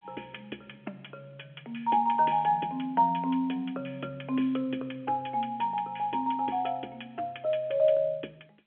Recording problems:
phone line; 280 Hz to 3.3 kHz, G.711

